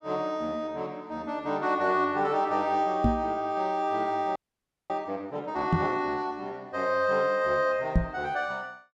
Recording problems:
microphone thump; at 3 s, at 5.5 s and at 8 s; peak +8 dB vs average level
frozen audio; at 4.5 s for 0.5 s

